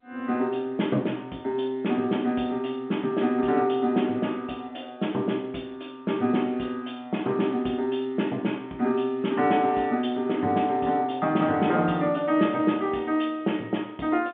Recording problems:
phone line; 170 Hz to 3.5 kHz, G.711

